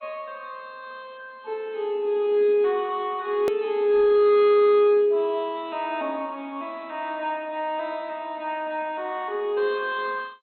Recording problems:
lossy compression; MP2, log-spectral distance 2 dB, nothing above 18.9 kHz
distorted audio; hard clipping, uneven, signal-to-distortion ratio 12 dB
hard cut with a click; at 3.5 s

